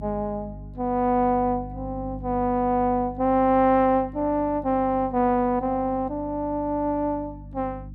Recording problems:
electrical hum; 50 Hz, harmonics up to 300 Hz, SNR 16 dB

